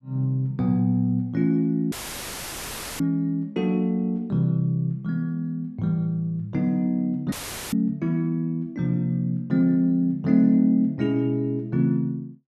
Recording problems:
audio cutting out; at 2 s for 1 s and at 7.5 s; filled with static

